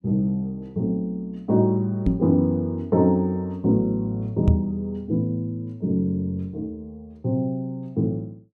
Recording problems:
microphone bump; at 2 s and at 4.5 s; peak +9 dB vs average level

